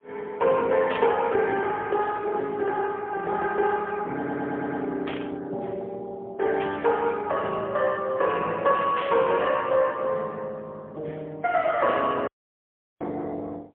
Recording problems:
phone line; 300 Hz to 2.8 kHz, AMR-NB, then MP3
burst of static; 4 times, first at 1 s; peak -4 dB vs average level
stutter; at 4 s
dropout; at 12 s for 0.5 s

